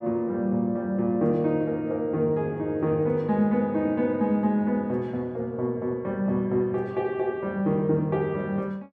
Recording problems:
none

